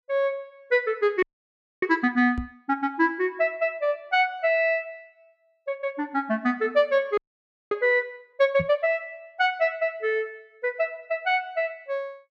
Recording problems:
frozen audio; at 1 s for 0.5 s and at 7 s for 0.5 s
knock on the microphone; at 2.5 s and at 8.5 s; peak -2 dB vs average level

